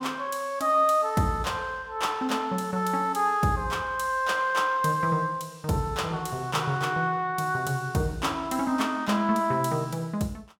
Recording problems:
none

